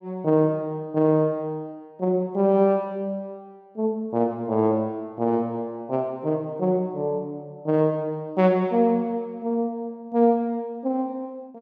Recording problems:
none

